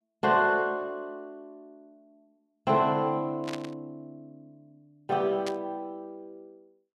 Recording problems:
static burst; at 3.5 s and at 5.5 s; peak -5 dB vs average level

